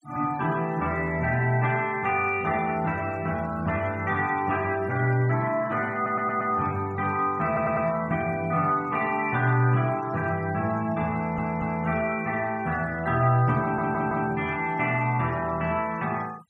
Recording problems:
denoising artefacts; signal-to-artefact ratio 23 dB
stutter; 4 times, first at 6 s

